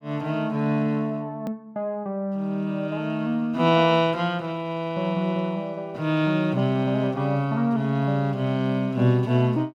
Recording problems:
hard cut with a click; at 1.5 s

